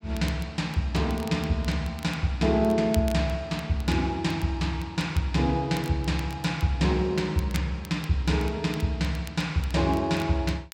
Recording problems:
crackling; vinyl, SNR 21 dB

